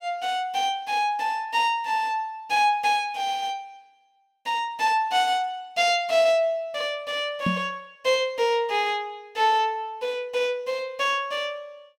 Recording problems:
knock on the microphone; at 7.5 s; peak +2 dB vs average level

